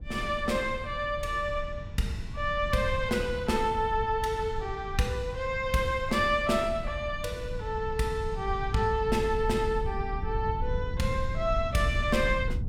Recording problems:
low-frequency rumble; below 92 Hz, SNR 8 dB

